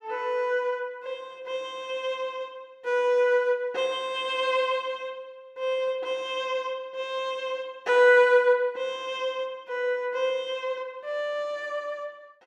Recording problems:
none

